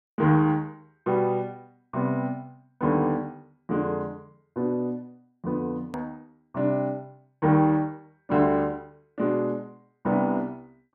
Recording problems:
edit click; at 6 s

